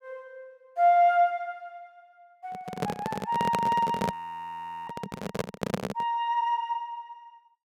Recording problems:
microphone handling noise; from 2.5 to 6 s; peak +3 dB vs average level
audio freezing; at 4 s for 1 s

